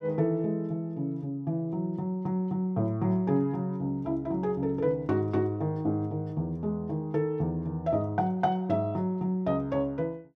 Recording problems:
none

